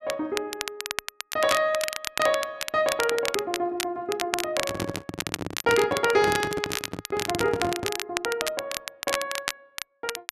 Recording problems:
crackle; vinyl, SNR 5 dB
microphone handling noise; from 4.5 to 8 s; peak 0 dB vs average level

